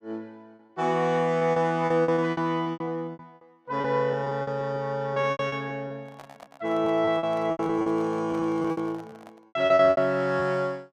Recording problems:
lost packets; 14% of the sound replaced, filled with repeated pitch periods
handling noise; from 6 to 9.5 s; peak -15 dB vs average level

